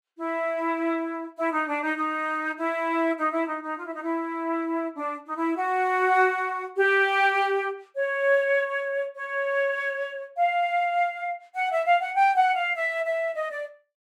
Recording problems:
none

